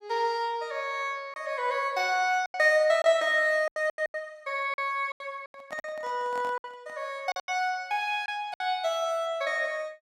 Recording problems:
packet loss; 9% of the sound replaced, filled with silence
handling noise; from 5.5 to 7 s; peak -12 dB vs average level

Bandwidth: 15.5 kHz